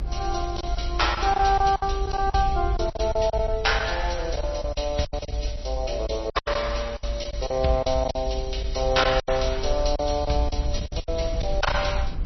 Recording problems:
codec artefacts; Vorbis, then MP3, log-spectral distance 5 dB, nothing above 5.8 kHz
low-frequency rumble; below 58 Hz, SNR 6 dB
packet loss; 12% of the sound replaced, filled with silence

